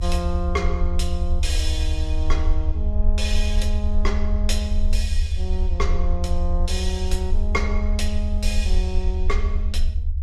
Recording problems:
low-frequency rumble; below 74 Hz, strongest tone 20 Hz, SNR -5 dB

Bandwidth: 14 kHz